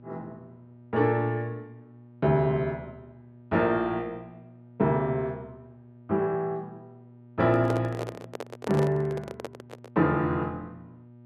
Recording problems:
hum; 60 Hz, harmonics up to 960 Hz, SNR 23 dB
microphone handling noise; from 7.5 to 10 s; peak -1 dB vs average level

